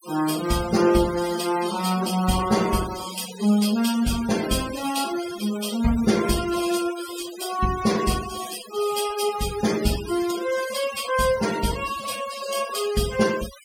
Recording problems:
denoising artefacts; signal-to-artefact ratio 12 dB

